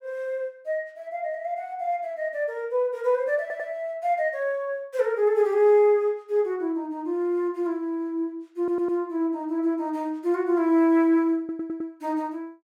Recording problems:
audio stuttering; at 3.5 s, at 8.5 s and at 11 s

